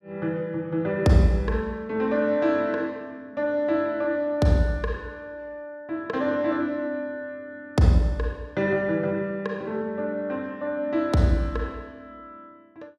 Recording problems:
none

